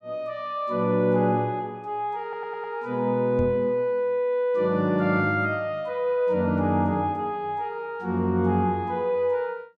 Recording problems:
stutter; at 2 s
microphone thump; at 3.5 s; peak -2 dB vs average level

